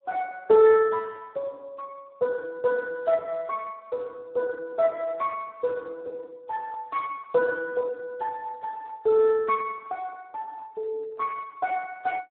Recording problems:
phone line; 150 Hz to 3.3 kHz, Speex

